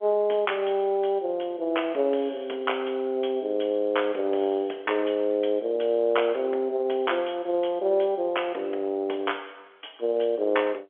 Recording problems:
phone line; 280 Hz to 3.4 kHz, G.711

